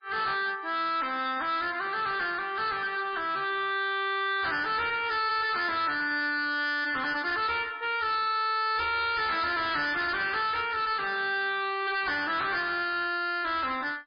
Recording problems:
codec artefacts; MP3, log-spectral distance 4 dB, nothing above 4.4 kHz
distorted audio; hard clipping, uneven, signal-to-distortion ratio 7 dB

